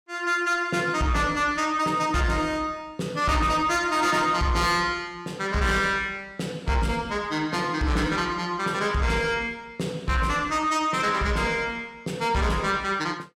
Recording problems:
distortion; soft clipping, signal-to-distortion ratio 12 dB

